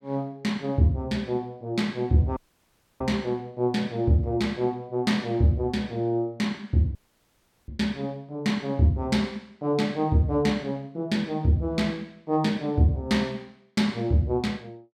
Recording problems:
dropout; at 2.5 s for 0.5 s and at 7 s for 0.5 s

